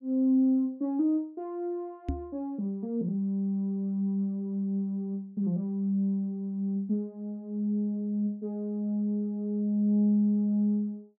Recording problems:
microphone thump; at 2 s; peak +1 dB vs average level

